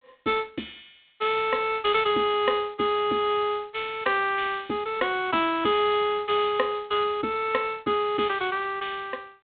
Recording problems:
phone line; 220 Hz to 3.9 kHz, G.726

